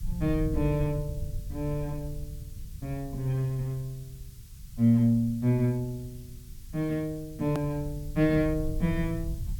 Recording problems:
background hiss; slope +4 dB per octave, SNR 25 dB
low-frequency rumble; below 98 Hz, SNR 11 dB
edit click; at 7.5 s

